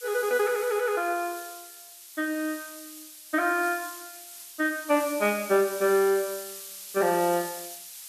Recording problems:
hiss; slope +5 dB per octave, SNR 13 dB

